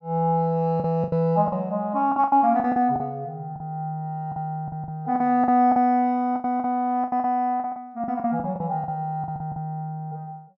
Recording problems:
lost packets; 13% of the sound replaced, filled with the last packet

